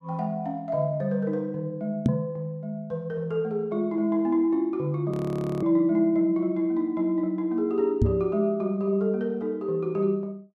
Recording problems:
microphone bump; at 2 s and at 8 s; peak +8 dB vs average level
audio freezing; at 5 s for 0.5 s

